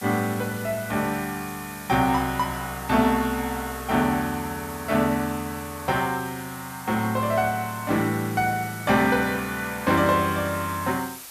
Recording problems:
hiss; SNR 15 dB

